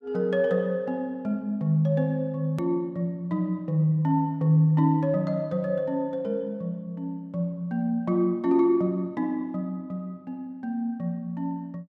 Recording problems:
hard cut with a click; at 2.5 s

